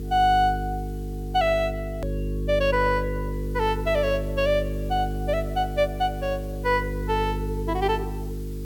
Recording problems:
hum; 50 Hz, harmonics up to 450 Hz, SNR 6 dB
hiss; slope -1 dB per octave, SNR 26 dB
click at an edit; at 2 s

